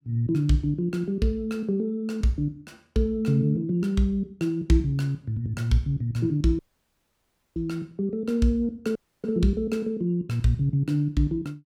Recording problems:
audio cutting out; at 6.5 s for 1 s and at 9 s

